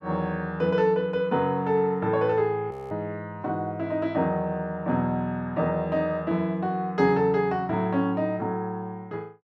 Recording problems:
frozen audio; at 2.5 s

